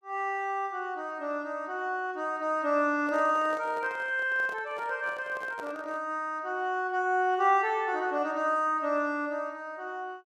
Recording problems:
handling noise; from 3 to 6 s; peak -9 dB vs average level

